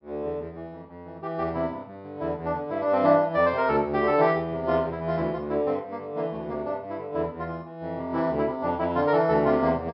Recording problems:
treble cut off; nothing above 5.2 kHz

